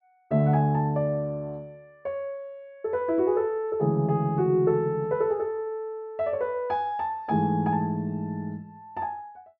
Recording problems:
none

